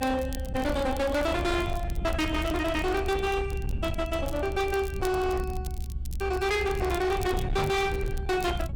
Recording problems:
distorted audio; hard clipping, uneven, signal-to-distortion ratio 6 dB
rumble; below 130 Hz, SNR 6 dB
crackle; vinyl, SNR 20 dB
microphone bump; at 7.5 s; peak +2 dB vs average level

